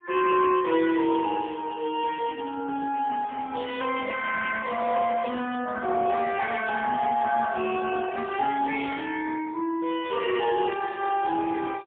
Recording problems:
phone line; 260 Hz to 3.4 kHz, AMR-NB, then MP3

